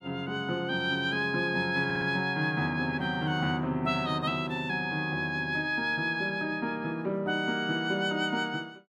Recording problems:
audio stuttering; at 2 s

